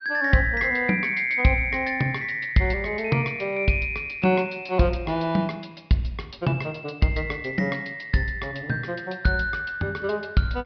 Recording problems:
treble cut off; nothing above 5.5 kHz

